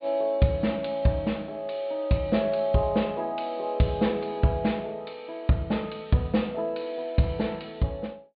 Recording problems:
treble missing; nothing above 4.5 kHz

